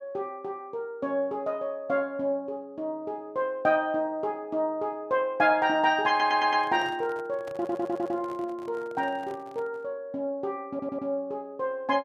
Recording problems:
handling noise; from 6 to 10 s; peak -12 dB vs average level
stutter; at 6 s, at 7.5 s and at 11 s

